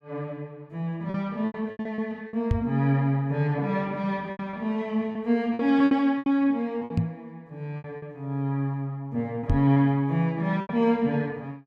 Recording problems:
lost packets; 9% of the sound replaced, filled with repeated pitch periods
microphone thump; at 2.5 s, at 7 s and at 9.5 s; peak +5 dB vs average level

